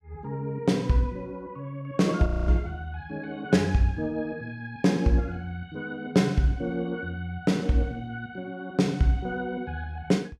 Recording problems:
audio freezing; at 2.5 s

